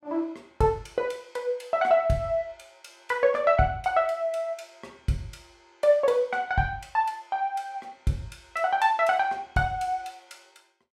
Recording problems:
none

